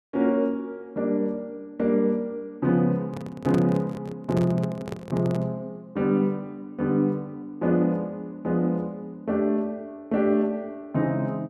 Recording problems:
handling noise; from 3 to 5.5 s; peak -2 dB vs average level

